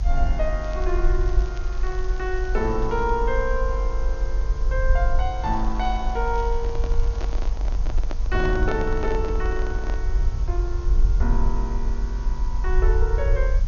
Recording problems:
treble cut off; nothing above 6.8 kHz
hiss; SNR 18 dB
low-frequency rumble; below 48 Hz, strongest tone 22 Hz, SNR -2 dB
crackling; from 0.5 to 3 s and from 5.5 to 7.5 s; loose cable, SNR 22 dB
microphone handling noise; from 6.5 to 10 s; peak 0 dB vs average level

